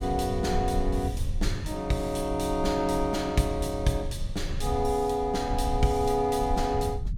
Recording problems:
rumble; below 82 Hz, SNR 7 dB

